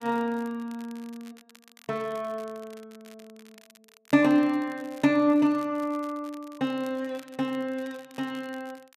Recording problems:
crackling; vinyl, SNR 26 dB

